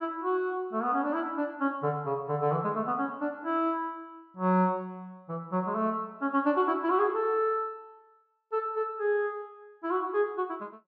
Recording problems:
low-pass filter; nothing above 8 kHz

